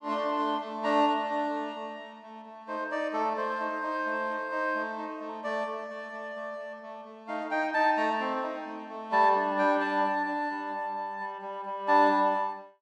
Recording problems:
none

